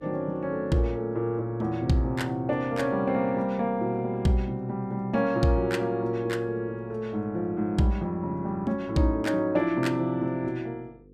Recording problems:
hum; 50 Hz, harmonics up to 500 Hz, SNR 26 dB

